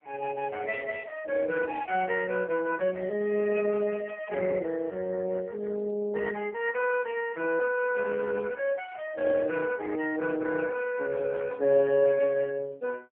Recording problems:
telephone audio; 190 Hz to 3 kHz, AMR-NB

